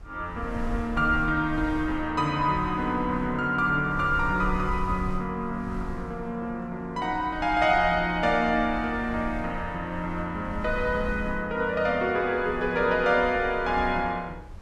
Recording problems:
wind noise; below 72 Hz, SNR 13 dB

